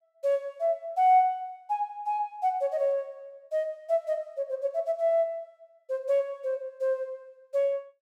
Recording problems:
none

